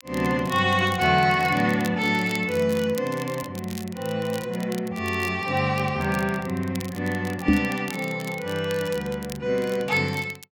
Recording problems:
crackling; vinyl, SNR 17 dB
microphone bump; at 7.5 s; peak +8 dB vs average level

